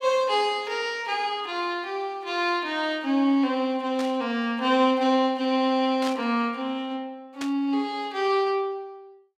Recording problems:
burst of static; at 4 s, at 6 s and at 7.5 s; peak -6 dB vs average level

